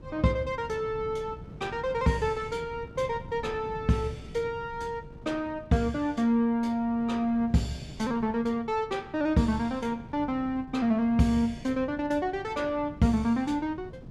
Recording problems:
wind noise; below 210 Hz, SNR 17 dB

